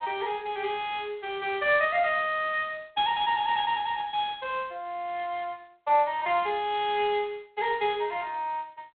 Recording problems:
telephone audio; 340 Hz to 3.5 kHz, G.726

